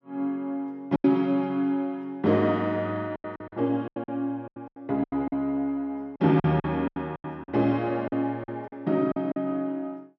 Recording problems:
lost packets; 12% of the sound replaced, filled with silence

